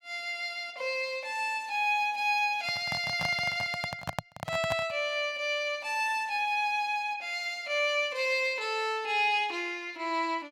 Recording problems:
handling noise; from 2.5 to 5 s; peak +1 dB vs average level

